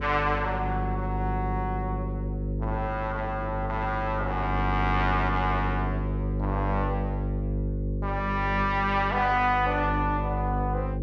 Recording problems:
hum; 50 Hz, harmonics up to 550 Hz, SNR 3 dB

